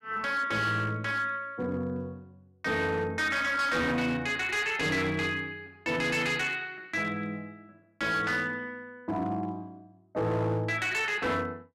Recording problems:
distorted audio; hard clipping, signal-to-distortion ratio 11 dB

